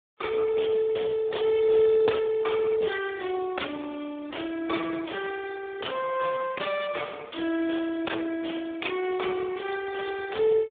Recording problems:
phone line; 300 Hz to 3.6 kHz, Speex

